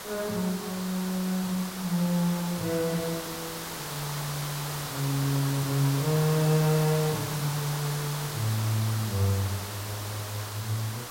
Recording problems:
hiss; SNR 6 dB

